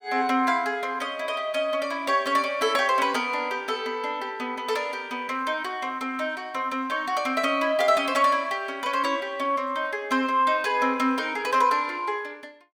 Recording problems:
none

